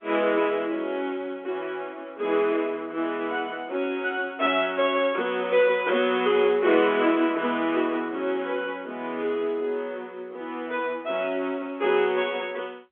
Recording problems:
phone line; 240 Hz to 3.5 kHz, G.711

